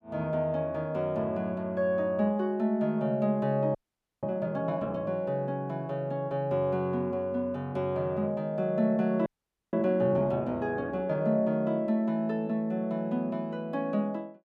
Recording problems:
audio freezing; at 4 s and at 9.5 s

